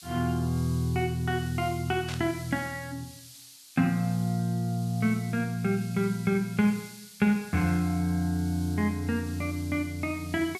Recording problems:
background hiss; SNR 18 dB
burst of static; at 2 s; peak -7 dB vs average level

